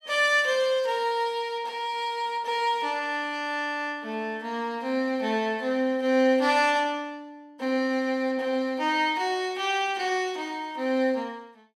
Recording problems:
none

